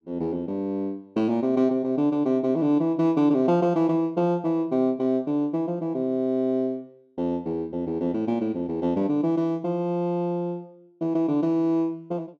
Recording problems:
none

